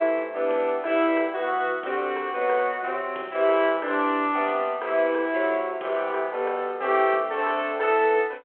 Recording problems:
telephone audio; 300 Hz to 3.5 kHz, G.726

